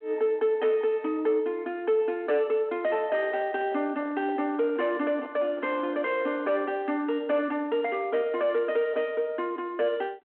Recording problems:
telephone audio; 190 Hz to 3.3 kHz, G.726
distorted audio; soft clipping, signal-to-distortion ratio 10 dB
microphone handling noise; from 3 to 6.5 s; peak -11 dB vs average level

